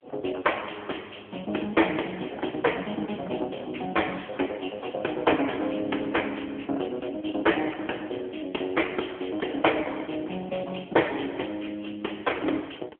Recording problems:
phone line; 240 Hz to 3.3 kHz, AMR-NB

